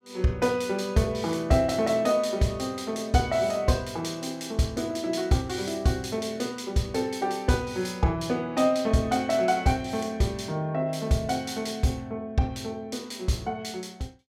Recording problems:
none

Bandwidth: 16 kHz